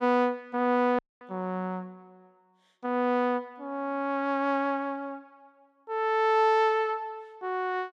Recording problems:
dropout; at 1 s

